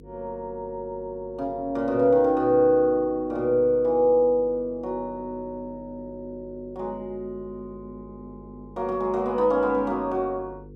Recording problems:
electrical hum; 50 Hz, harmonics up to 500 Hz, SNR 22 dB

